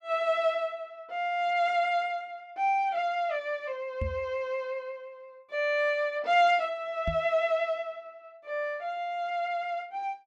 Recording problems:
microphone thump; at 4 s and at 7 s; peak 0 dB vs average level

